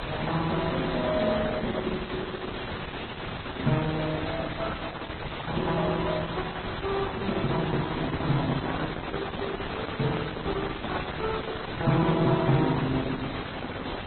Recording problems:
codec artefacts; Opus, then Vorbis, log-spectral distance 16 dB, nothing above 3.7 kHz
hiss; SNR 5 dB
microphone handling noise; from 8 to 11 s; peak +4 dB vs average level

